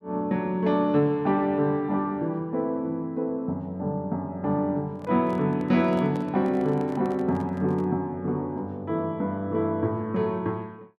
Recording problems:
microphone handling noise; from 5 to 8 s; peak -9 dB vs average level

